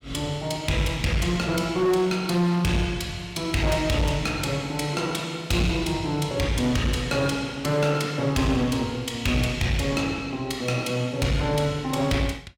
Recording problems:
distorted audio; hard clipping, uneven, signal-to-distortion ratio 10 dB

